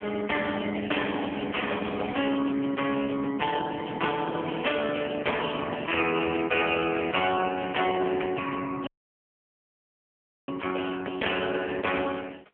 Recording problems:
phone line; 260 Hz to 3.2 kHz, AMR-NB
audio cutting out; at 9 s for 1.5 s

